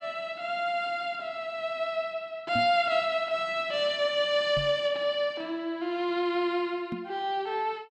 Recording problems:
microphone bump; at 2.5 s, at 4.5 s and at 7 s; peak -3 dB vs average level

